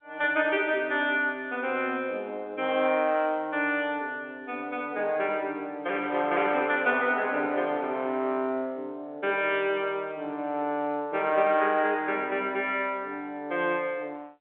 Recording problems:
telephone audio; 220 Hz to 3.4 kHz, G.711

